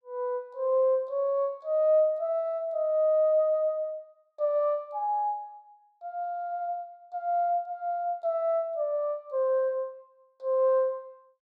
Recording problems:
none

